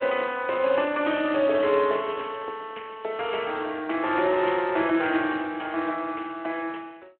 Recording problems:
phone line; 280 Hz to 3.2 kHz, Speex

